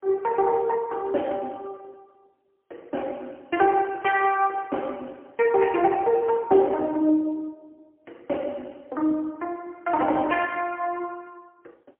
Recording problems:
telephone audio; 260 Hz to 3.1 kHz, AMR-NB, then MP3

